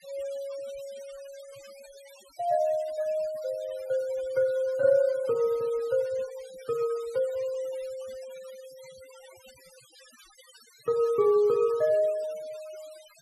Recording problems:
denoising artefacts; signal-to-artefact ratio 23 dB

